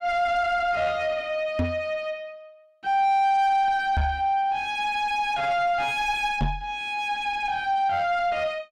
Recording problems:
distortion; soft clipping, signal-to-distortion ratio 6 dB
knock on the microphone; at 1.5 s, at 4 s and at 6.5 s; peak +3 dB vs average level

